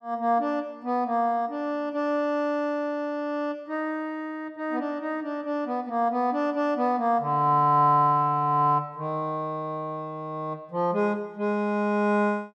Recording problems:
none

